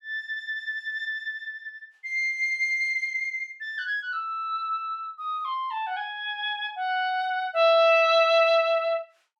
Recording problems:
none

